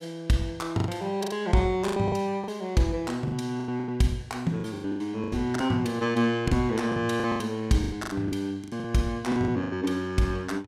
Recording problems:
packet loss; 14% of the sound replaced, filled with the last packet

